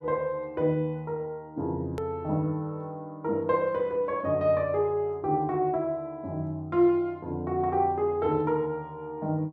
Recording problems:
hard cut with a click; at 2 s

